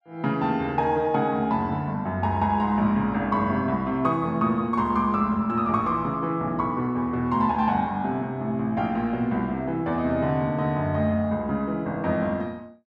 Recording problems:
none

